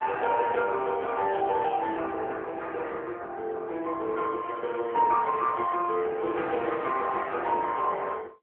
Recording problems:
phone line; 300 Hz to 3.5 kHz, AMR-NB

